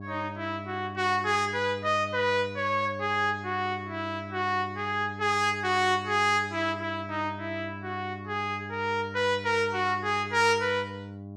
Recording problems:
hum; 50 Hz, harmonics up to 1 kHz, SNR 13 dB

